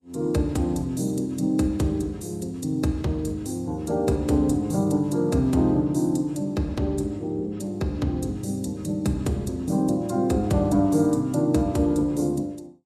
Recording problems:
codec artefacts; Vorbis, log-spectral distance 2 dB, nothing above 13.5 kHz

